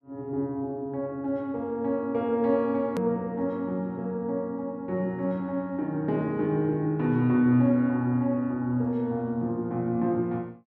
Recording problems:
hard cut with a click; at 3 s

